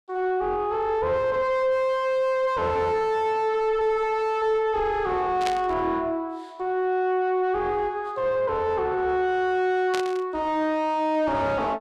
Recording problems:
distortion; soft clipping, signal-to-distortion ratio 5 dB
static burst; at 5.5 s and at 10 s; peak -2 dB vs average level

